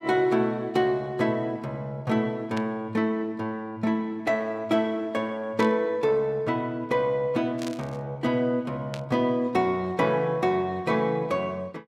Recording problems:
static burst; 4 times, first at 2.5 s; peak -7 dB vs average level

